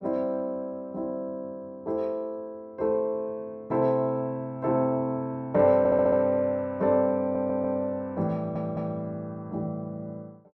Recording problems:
stutter; at 6 s, at 7 s and at 8.5 s

